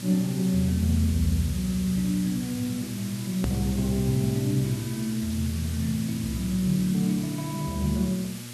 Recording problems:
electrical hum; 60 Hz, harmonics up to 840 Hz, SNR 14 dB
hiss; SNR 13 dB
edit click; at 3.5 s

